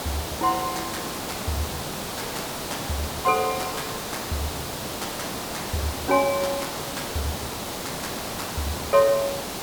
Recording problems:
background hiss; slope -4 dB per octave, SNR 3 dB

